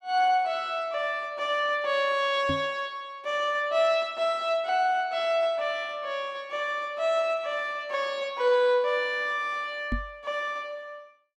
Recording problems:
knock on the microphone; at 2.5 s and at 10 s; peak 0 dB vs average level

